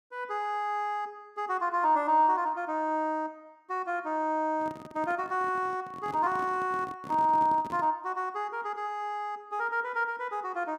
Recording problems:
handling noise; from 4.5 to 8 s; peak -9 dB vs average level

